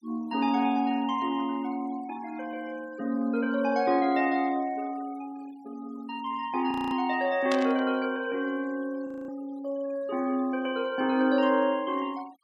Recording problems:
denoising artefacts; signal-to-artefact ratio 24 dB
frozen audio; at 6.5 s and at 9 s
burst of static; at 7.5 s; peak -2 dB vs average level

